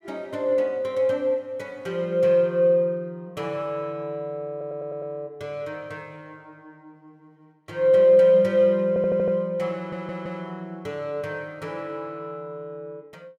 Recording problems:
stutter; at 4.5 s, at 9 s and at 10 s

